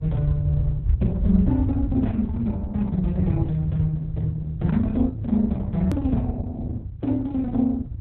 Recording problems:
codec artefacts; Opus, log-spectral distance 2 dB, nothing above 13.1 kHz
rumble; below 98 Hz, SNR 2 dB
edit click; at 6 s

